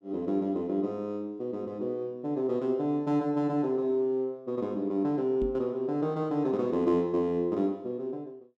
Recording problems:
microphone thump; at 5.5 s; peak -2 dB vs average level

